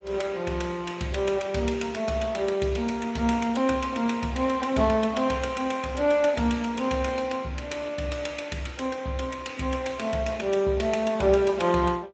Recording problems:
lossy codec; Speex, log-spectral distance 4 dB, nothing above 7.6 kHz

